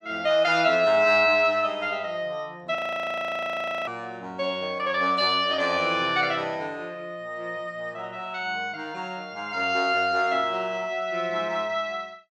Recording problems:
frozen audio; at 3 s for 1 s

